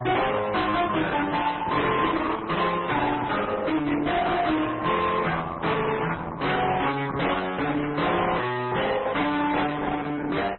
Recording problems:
lossy compression; Opus, then MP3, log-spectral distance 5 dB, nothing above 4 kHz
distorted audio; soft clipping, signal-to-distortion ratio 6 dB
static burst; 4 times, first at 1 s; peak -9 dB vs average level

